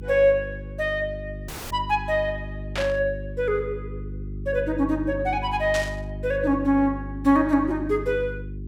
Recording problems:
electrical hum; 50 Hz, harmonics up to 400 Hz, SNR 11 dB
audio cutting out; at 1.5 s
static burst; at 3 s and at 5.5 s; peak -3 dB vs average level

